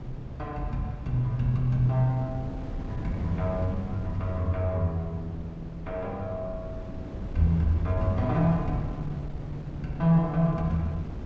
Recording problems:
treble cut off; nothing above 8 kHz
wind on the microphone; below 210 Hz, SNR 10 dB

